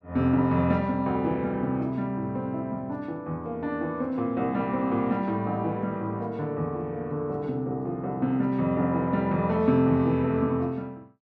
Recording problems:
none

